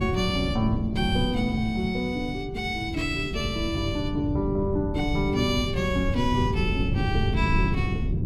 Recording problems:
wind on the microphone; below 170 Hz, SNR 3 dB

